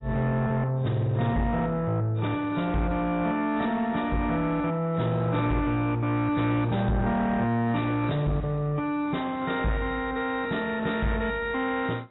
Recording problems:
lossy compression; AAC, log-spectral distance 3 dB, nothing above 3.8 kHz
distortion; soft clipping, signal-to-distortion ratio 11 dB

